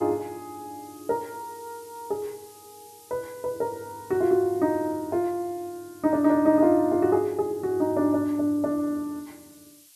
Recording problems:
background hiss; slope +4 dB per octave, SNR 25 dB

